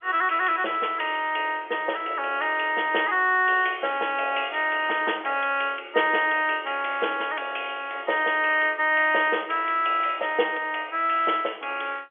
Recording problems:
telephone audio; 320 Hz to 3.4 kHz, G.711

